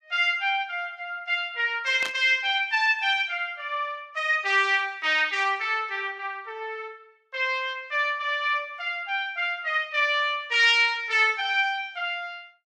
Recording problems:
burst of static; at 2 s; peak -5 dB vs average level

